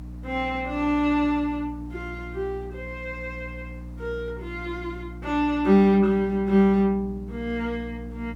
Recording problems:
electrical hum; 60 Hz, harmonics up to 300 Hz, SNR 14 dB
background hiss; slope -7 dB per octave, SNR 30 dB

